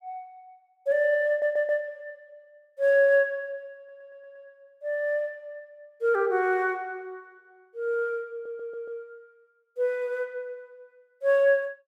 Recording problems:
stutter; at 1.5 s, at 4 s and at 8.5 s

